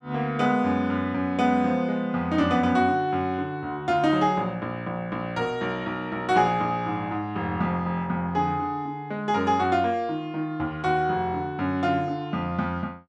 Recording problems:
none

